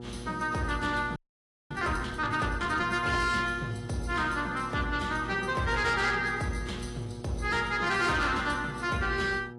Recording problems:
lossy compression; AAC, log-spectral distance 4 dB
distortion; soft clipping, signal-to-distortion ratio 11 dB
mains hum; 60 Hz, harmonics up to 1.3 kHz, SNR 14 dB
frozen audio; at 1 s for 0.5 s

